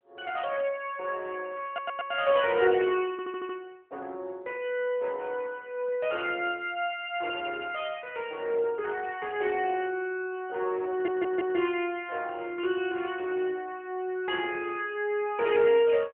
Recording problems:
phone line; 320 Hz to 3.3 kHz, AMR-NB
stutter; at 1.5 s, at 3 s and at 11 s

